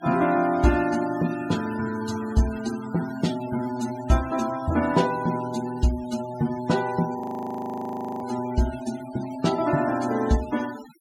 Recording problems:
noise reduction artefacts; signal-to-artefact ratio 16 dB
audio freezing; at 7 s for 1 s

